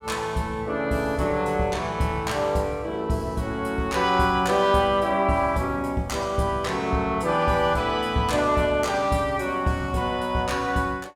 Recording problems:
none

